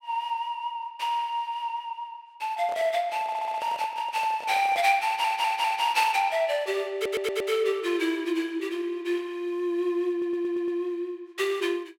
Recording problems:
handling noise; from 2.5 to 5 s; peak -7 dB vs average level
audio stuttering; 4 times, first at 3 s

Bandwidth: 16 kHz